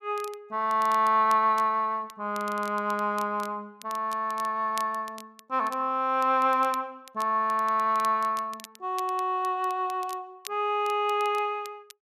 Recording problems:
crackle; vinyl, SNR 21 dB

